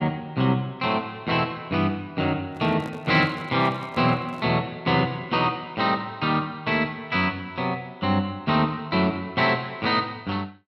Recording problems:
handling noise; from 2.5 to 4.5 s; peak -9 dB vs average level

